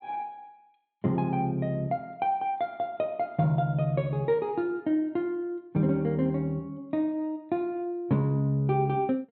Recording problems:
treble cut off; nothing above 4.3 kHz

